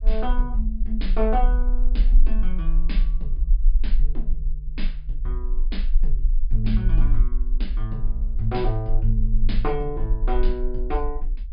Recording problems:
low-pass filter; nothing above 5.1 kHz
low-frequency rumble; below 38 Hz, strongest tone 20 Hz, SNR -4 dB

